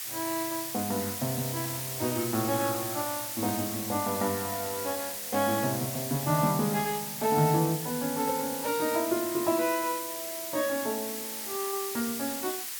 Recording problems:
hiss; slope +4 dB per octave, SNR 3 dB

